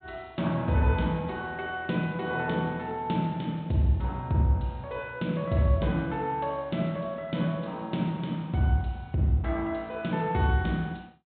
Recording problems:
treble cut off; nothing above 4 kHz

